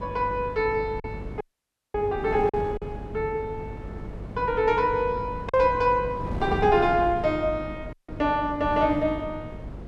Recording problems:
mains hum; 50 Hz, harmonics up to 600 Hz, SNR 16 dB
wind on the microphone; below 370 Hz, SNR 12 dB
lost packets; 1.9% of the sound replaced, filled with silence
dropout; at 1.5 s for 0.5 s and at 8 s

